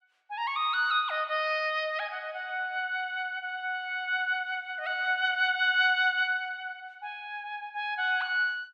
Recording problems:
none

